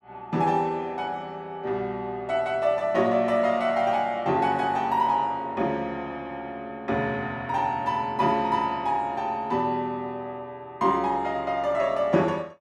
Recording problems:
none

